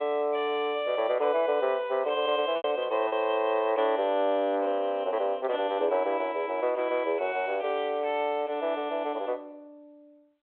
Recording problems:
phone line; 300 Hz to 3.5 kHz, G.726
lost packets; 1.2% of the sound replaced, filled with repeated pitch periods

